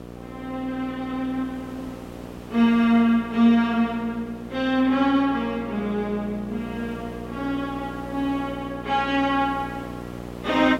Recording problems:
electrical hum; 60 Hz, harmonics up to 1.9 kHz, SNR 14 dB
hiss; slope -6 dB per octave, SNR 22 dB

